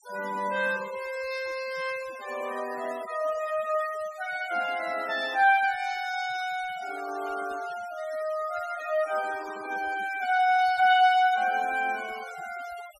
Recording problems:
denoising artefacts; signal-to-artefact ratio 18 dB

